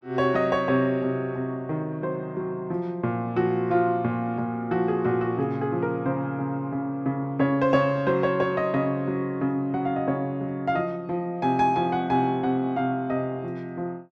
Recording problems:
none

